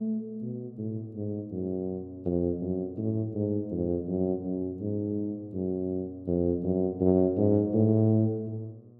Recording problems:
mains hum; 60 Hz, harmonics up to 720 Hz, SNR 25 dB

